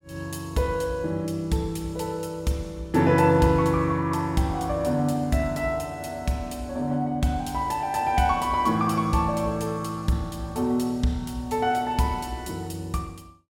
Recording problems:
none

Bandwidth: 17.5 kHz